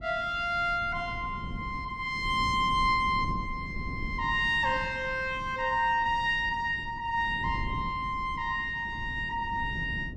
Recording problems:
wind on the microphone; below 190 Hz, SNR 12 dB

